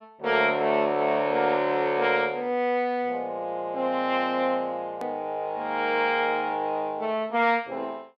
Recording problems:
click at an edit; at 5 s

